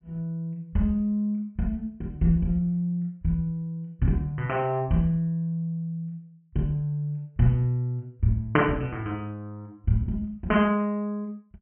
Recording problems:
treble cut off; nothing above 3.1 kHz

